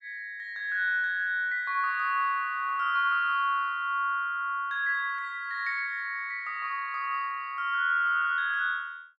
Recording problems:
none

